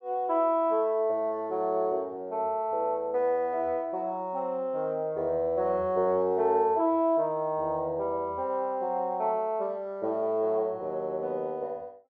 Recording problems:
none

